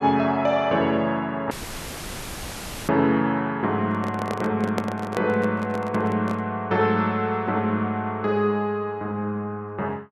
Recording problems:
audio cutting out; at 1.5 s for 1.5 s; filled with static
handling noise; from 4 to 6.5 s; peak +2 dB vs average level

